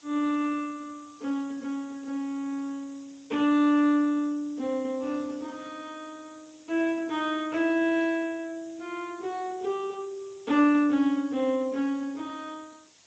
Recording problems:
lossy codec; Speex, log-spectral distance 9 dB
hiss; SNR 27 dB

